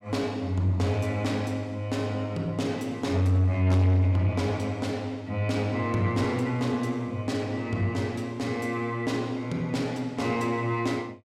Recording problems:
distortion; soft clipping, signal-to-distortion ratio 11 dB

